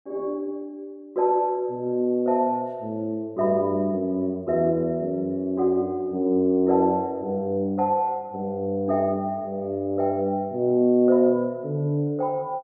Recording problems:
none

